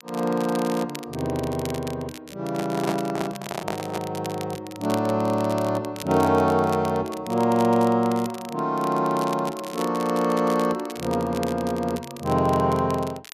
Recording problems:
crackle; vinyl, SNR 17 dB
microphone handling noise; from 2.5 to 4 s; peak +1 dB vs average level

